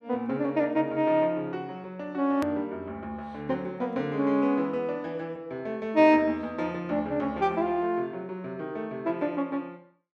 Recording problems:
edit click; at 2.5 s

